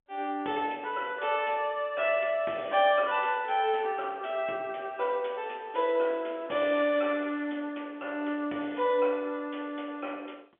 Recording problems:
telephone audio; 240 Hz to 3.4 kHz, G.711

